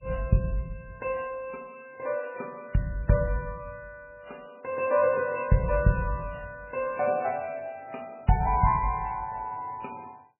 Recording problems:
lossy codec; MP3, log-spectral distance 3 dB, nothing above 2.4 kHz

